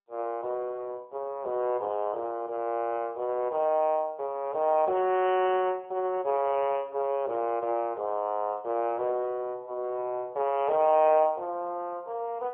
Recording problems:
phone line; 320 Hz to 3.1 kHz, AMR-NB

